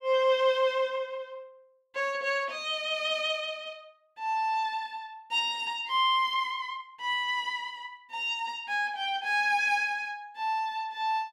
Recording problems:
none

